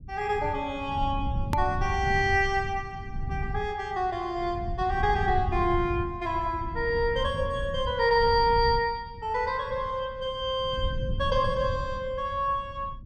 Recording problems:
low-frequency rumble; below 120 Hz, SNR 8 dB
edit click; at 1.5 s

